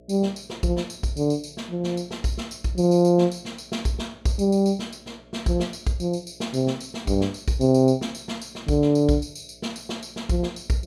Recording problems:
hum; 60 Hz, harmonics up to 660 Hz, SNR 29 dB

